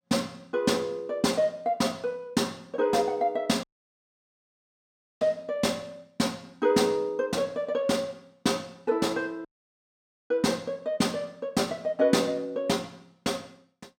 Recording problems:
audio cutting out; at 3.5 s for 1.5 s and at 9.5 s for 1 s

